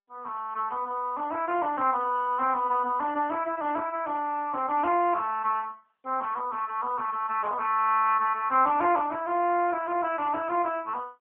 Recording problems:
telephone audio; 240 Hz to 3.2 kHz, AMR-NB

